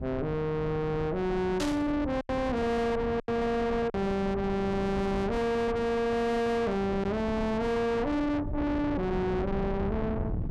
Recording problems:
distortion; soft clipping, signal-to-distortion ratio 7 dB
low-frequency rumble; below 330 Hz, SNR 8 dB
packet loss; 2% of the sound replaced, filled with silence
burst of static; at 1.5 s; peak -3 dB vs average level

